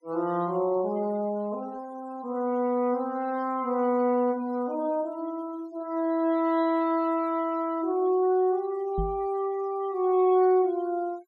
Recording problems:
noise reduction artefacts; signal-to-artefact ratio 26 dB
knock on the microphone; at 9 s; peak -1 dB vs average level

